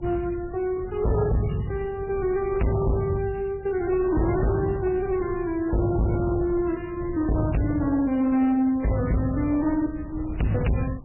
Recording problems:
codec artefacts; AAC, then MP3, log-spectral distance 4 dB, nothing above 2.9 kHz
distorted audio; hard clipping, signal-to-distortion ratio 6 dB
wind on the microphone; below 140 Hz, SNR 15 dB

